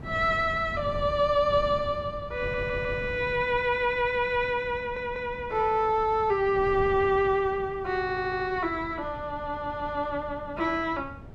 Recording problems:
wind on the microphone; below 230 Hz, SNR 15 dB
audio stuttering; at 2.5 s, at 5 s and at 8 s

